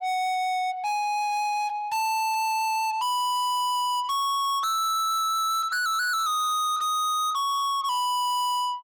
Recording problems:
distorted audio; soft clipping, signal-to-distortion ratio 7 dB

